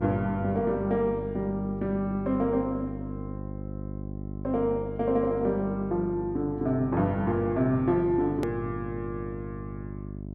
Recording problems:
hum; 50 Hz, harmonics up to 700 Hz, SNR 10 dB
click at an edit; at 8.5 s

